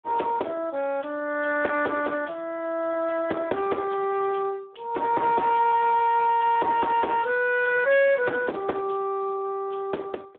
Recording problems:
telephone audio; 300 Hz to 2.9 kHz, Speex
distortion; soft clipping, signal-to-distortion ratio 10 dB

